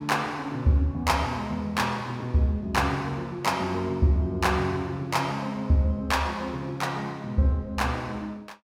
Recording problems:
none

